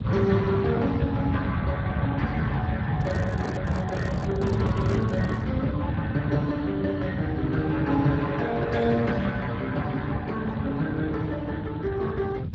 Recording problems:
lossy compression; Speex, log-spectral distance 3 dB
rumble; below 180 Hz, SNR 5 dB
microphone handling noise; from 3 to 5.5 s; peak -2 dB vs average level

